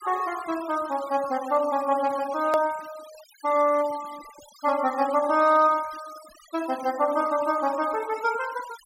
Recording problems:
denoising artefacts; signal-to-artefact ratio 20 dB
click at an edit; at 2.5 s

